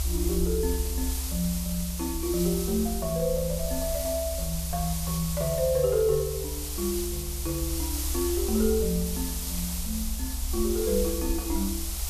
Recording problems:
background hiss; SNR 4 dB
low-frequency rumble; below 68 Hz, strongest tone 68 Hz, SNR 5 dB

